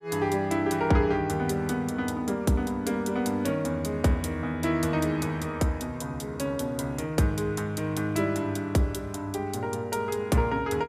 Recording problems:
none

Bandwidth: 15 kHz